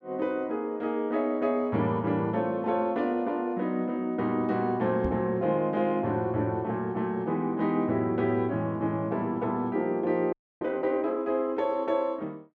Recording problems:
microphone bump; at 5 s; peak -2 dB vs average level
audio freezing; at 10 s

